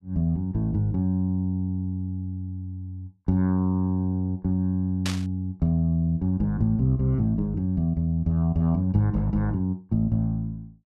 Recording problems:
burst of static; at 5 s; peak -1 dB vs average level

